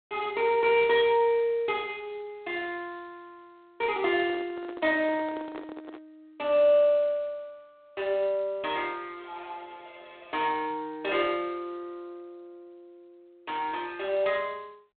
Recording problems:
phone line; 280 Hz to 3.7 kHz, G.726
microphone handling noise; from 4 to 6 s; peak -10 dB vs average level

